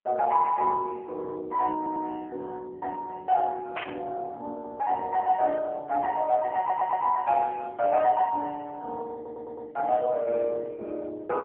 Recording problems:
telephone audio; 320 Hz to 3.4 kHz, AMR-NB
audio stuttering; at 2 s, at 6.5 s and at 9 s
static burst; at 4 s; peak -1 dB vs average level

